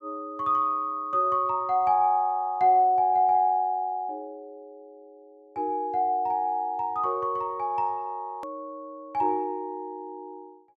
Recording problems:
hard cut with a click; at 8.5 s

